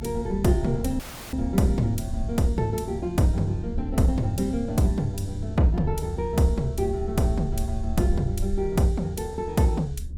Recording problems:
low-frequency rumble; below 72 Hz, SNR 10 dB
wind on the microphone; below 180 Hz, SNR 12 dB
dropout; at 1 s

